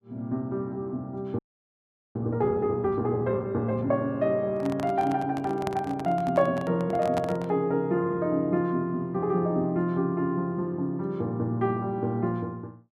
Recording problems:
audio freezing; at 1.5 s for 1 s
handling noise; from 4.5 to 7.5 s; peak -1 dB vs average level

